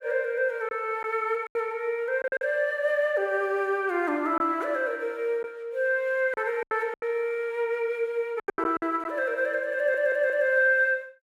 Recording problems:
lost packets; 6% of the sound replaced, filled with silence
stutter; at 10 s

